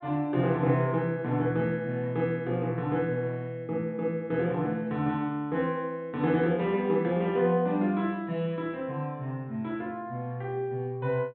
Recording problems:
treble missing; nothing above 4 kHz

